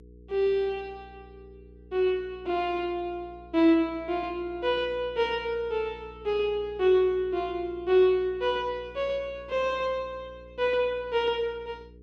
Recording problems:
electrical hum; 60 Hz, harmonics up to 480 Hz, SNR 23 dB

